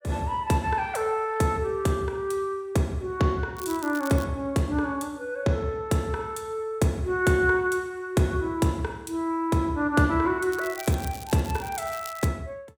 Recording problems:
crackling; at 3.5 s and from 11 to 12 s; loose cable, SNR 16 dB

